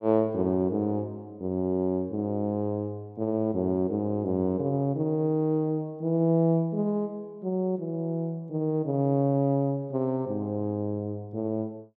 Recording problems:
none

